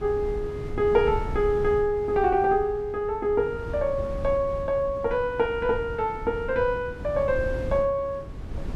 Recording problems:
wind on the microphone; below 160 Hz, SNR 11 dB

